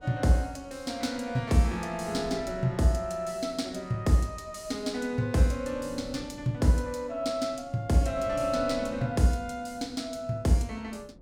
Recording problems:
wind noise; below 280 Hz, SNR 20 dB

